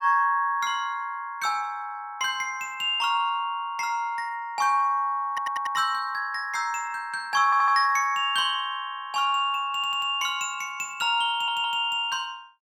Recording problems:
audio stuttering; 4 times, first at 5.5 s

